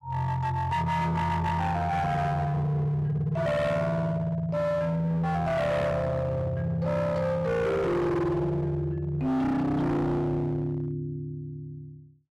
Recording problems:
distorted audio; hard clipping, signal-to-distortion ratio 7 dB

